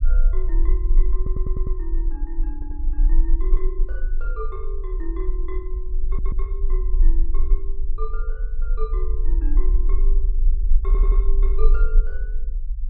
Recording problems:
low-frequency rumble; below 36 Hz, strongest tone 22 Hz, SNR -13 dB
audio stuttering; 4 times, first at 1 s

